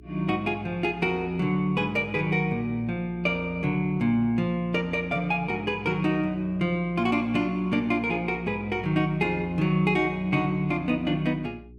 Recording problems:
hum; 60 Hz, harmonics up to 420 Hz, SNR 22 dB

